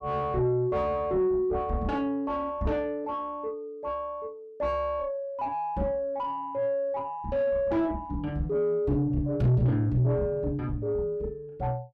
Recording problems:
distortion; soft clipping, signal-to-distortion ratio 8 dB

